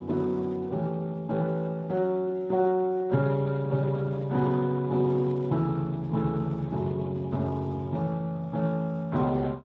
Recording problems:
codec artefacts; Speex, log-spectral distance 2 dB

